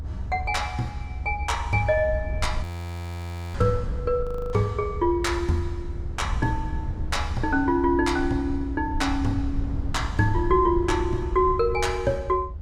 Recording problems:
low-frequency rumble; below 84 Hz, SNR 7 dB
audio freezing; at 2.5 s for 1 s and at 4 s

